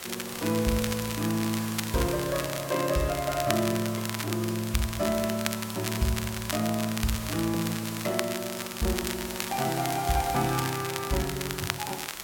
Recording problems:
hiss; slope -2 dB per octave, SNR 9 dB
crackle; vinyl, SNR 6 dB

